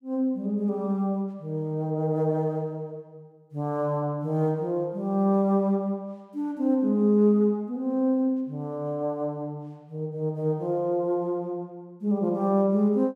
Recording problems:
none

